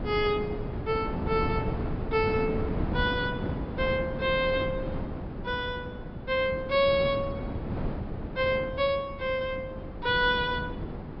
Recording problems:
treble missing; nothing above 5.3 kHz
wind noise; below 360 Hz, SNR 6 dB

